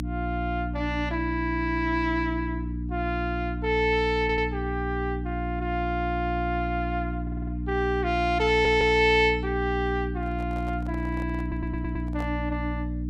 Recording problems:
hum; 60 Hz, harmonics up to 300 Hz, SNR 4 dB
stutter; 4 times, first at 4 s
microphone handling noise; from 10 to 12 s; peak -10 dB vs average level

